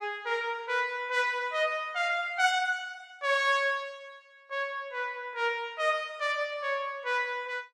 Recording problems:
none

